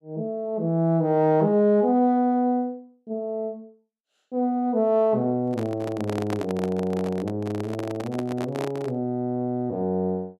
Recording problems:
handling noise; from 5.5 to 9 s; peak -4 dB vs average level

